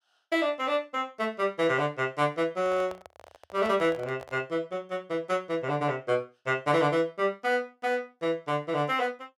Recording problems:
microphone handling noise; from 2.5 to 4.5 s; peak -8 dB vs average level

